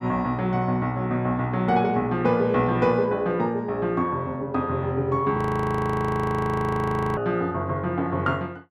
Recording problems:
frozen audio; at 5.5 s for 2 s

